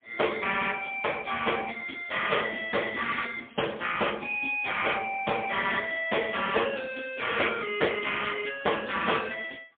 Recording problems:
telephone audio; 220 Hz to 3.5 kHz, AMR-NB, then MP3
crackle; from 2 to 4 s; loose cable, SNR 27 dB

